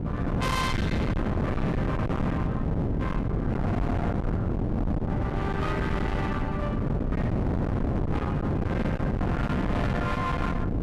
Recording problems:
distortion; hard clipping, signal-to-distortion ratio 7 dB
wind noise; below 380 Hz, SNR -4 dB

